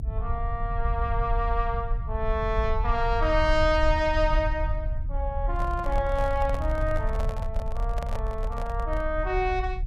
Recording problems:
low-frequency rumble; below 62 Hz, strongest tone 36 Hz, SNR 2 dB
handling noise; from 5.5 to 9 s; peak -5 dB vs average level

